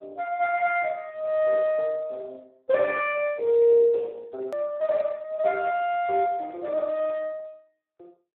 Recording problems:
phone line; 340 Hz to 2.1 kHz, Speex
hard cut with a click; at 4.5 s

